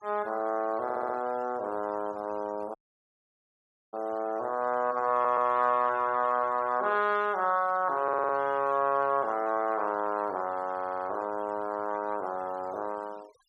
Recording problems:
denoising artefacts; signal-to-artefact ratio 25 dB
stutter; 4 times, first at 1 s
audio cutting out; at 3 s for 1 s

